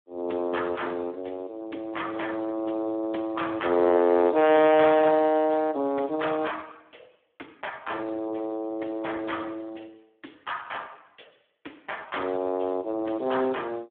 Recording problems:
phone line; 220 Hz to 3.6 kHz, Speex

